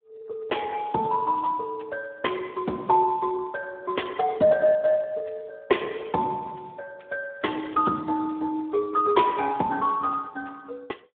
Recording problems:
phone line; 220 Hz to 3.5 kHz, Speex

